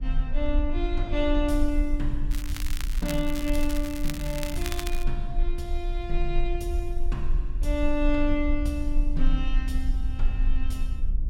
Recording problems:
low-frequency rumble; below 38 Hz, strongest tone 20 Hz, SNR 0 dB
wind noise; below 160 Hz, SNR 14 dB
crackle; from 2.5 to 5 s; loose cable, SNR 7 dB

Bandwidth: 16.5 kHz